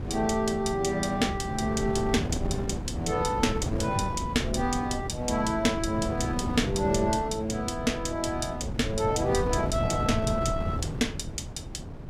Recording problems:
wind on the microphone; below 250 Hz, SNR 5 dB

